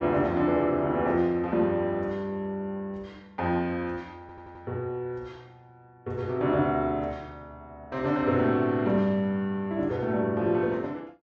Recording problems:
treble missing; nothing above 7.9 kHz
stutter; at 4 s

